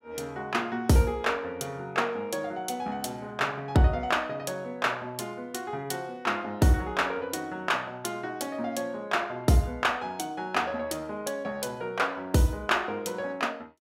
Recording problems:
none

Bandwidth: 16 kHz